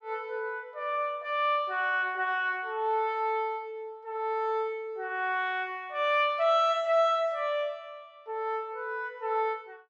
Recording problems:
none

